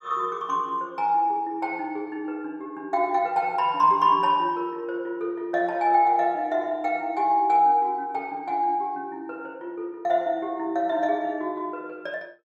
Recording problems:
none

